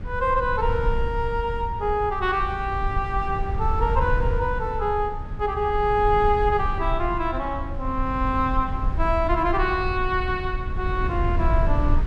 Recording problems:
rumble; below 80 Hz, SNR 5 dB

